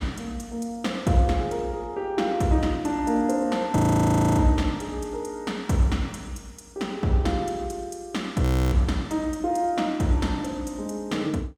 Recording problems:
frozen audio; at 4 s for 0.5 s and at 8.5 s

